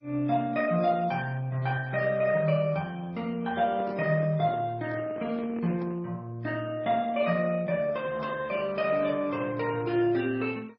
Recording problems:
lossy compression; MP3, then MP2, log-spectral distance 2 dB, nothing above 5.2 kHz
handling noise; from 3.5 to 6 s; peak -9 dB vs average level

